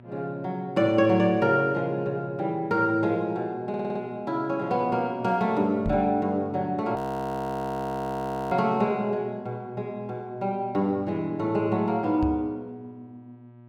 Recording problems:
electrical hum; 60 Hz, harmonics up to 1.3 kHz, SNR 23 dB
stutter; at 3.5 s
microphone bump; at 6 s and at 12 s; peak -1 dB vs average level
frozen audio; at 7 s for 1.5 s

